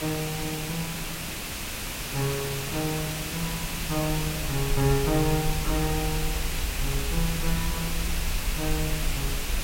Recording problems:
background hiss; SNR 1 dB
rumble; below 54 Hz, SNR 5 dB

